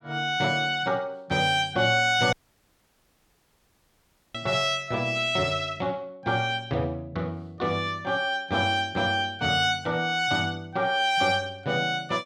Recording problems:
dropout; at 2.5 s for 2 s

